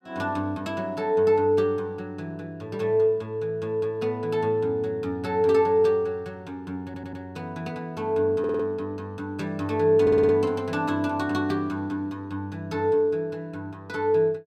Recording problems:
stutter; at 7 s, at 8.5 s and at 10 s

